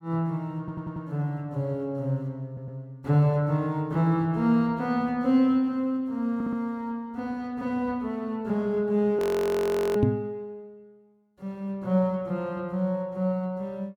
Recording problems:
stutter; at 0.5 s, at 2.5 s and at 6.5 s
audio freezing; at 9 s for 1 s
knock on the microphone; at 10 s; peak +8 dB vs average level

